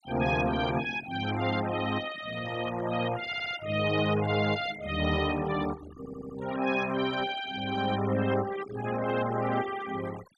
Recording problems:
denoising artefacts; signal-to-artefact ratio 13 dB
audio stuttering; at 3.5 s and at 6 s

